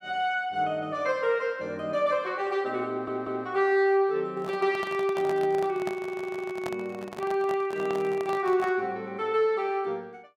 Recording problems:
audio stuttering; at 3 s and at 6 s
microphone handling noise; from 4.5 to 9 s; peak -4 dB vs average level

